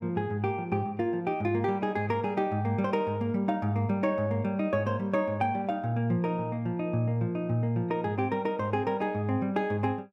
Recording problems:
none

